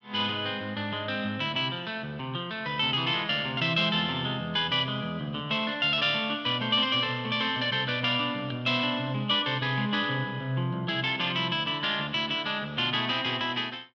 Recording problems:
none

